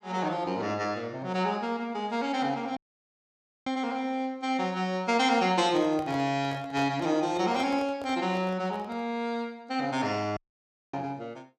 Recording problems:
dropout; at 3 s for 1 s and at 10 s for 0.5 s
handling noise; from 5.5 to 9 s; peak -6 dB vs average level

